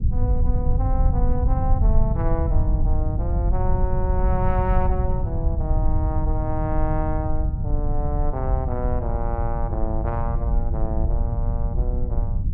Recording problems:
rumble; below 80 Hz, SNR -6 dB

